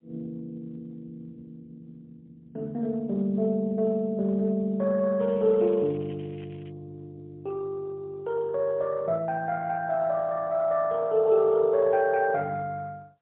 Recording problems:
telephone audio; 170 Hz to 2.3 kHz, AMR-NB, then MP3
crackling; from 5 to 6.5 s; loose cable, SNR 27 dB

